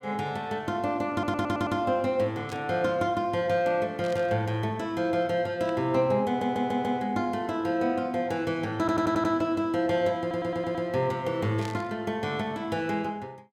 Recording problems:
audio stuttering; 4 times, first at 1 s
burst of static; 4 times, first at 2.5 s; peak -9 dB vs average level

